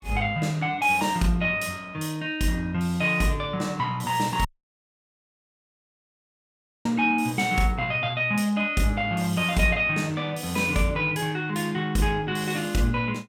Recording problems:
audio cutting out; at 4.5 s for 2.5 s

